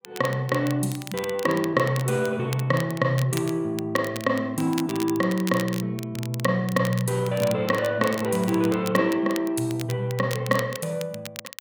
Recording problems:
crackle; vinyl, SNR 14 dB

